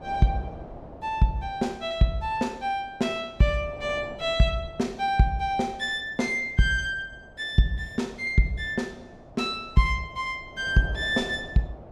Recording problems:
wind noise; below 680 Hz, SNR 19 dB

